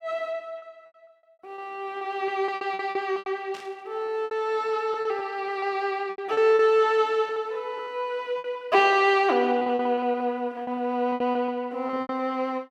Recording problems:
lost packets; 12% of the sound replaced, filled with repeated pitch periods
burst of static; at 3.5 s; peak -13 dB vs average level

